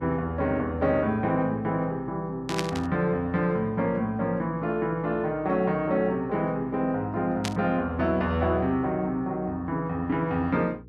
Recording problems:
hum; 60 Hz, harmonics up to 480 Hz, SNR 21 dB
burst of static; at 2.5 s and at 7.5 s; peak +1 dB vs average level

